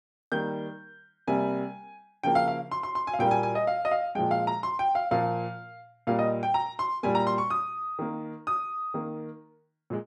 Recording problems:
none

